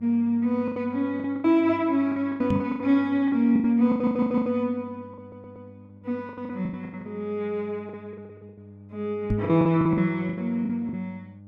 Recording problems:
electrical hum; 50 Hz, harmonics up to 600 Hz, SNR 23 dB
packet loss; 15% of the sound replaced, filled with the last packet
knock on the microphone; at 2.5 s and at 9.5 s; peak +3 dB vs average level
stutter; at 4 s and at 5 s

